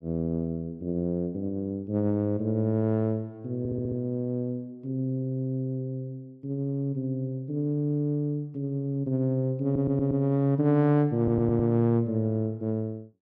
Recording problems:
stutter; at 3.5 s, at 9.5 s and at 11 s

